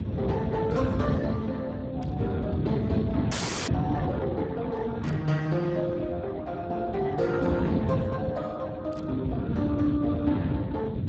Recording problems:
codec artefacts; Speex, log-spectral distance 4 dB, nothing above 7.3 kHz
rumble; below 260 Hz, SNR 3 dB
static burst; at 2 s, at 5 s and at 9 s; peak -15 dB vs average level
audio freezing; at 3.5 s

